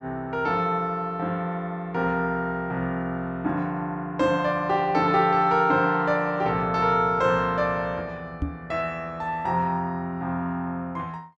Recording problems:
microphone thump; at 8.5 s; peak +1 dB vs average level

